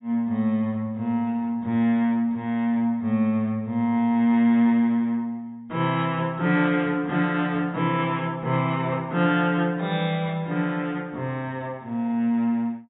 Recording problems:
low-pass filter; nothing above 4 kHz

